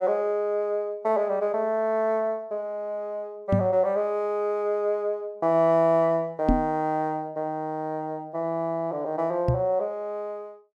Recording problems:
microphone bump; at 3.5 s, at 6.5 s and at 9.5 s; peak +7 dB vs average level

